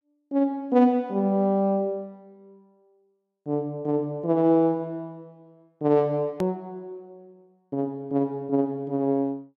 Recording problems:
click at an edit; at 6.5 s

